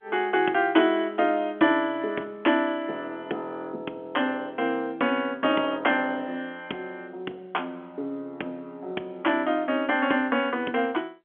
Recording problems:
telephone audio; 220 Hz to 3.4 kHz, G.711

